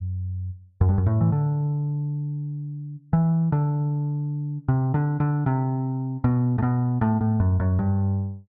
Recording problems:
none

